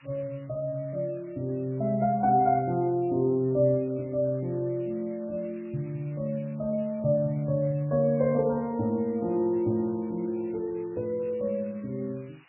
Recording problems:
lossy codec; MP3, log-spectral distance 14 dB
background hiss; SNR 28 dB

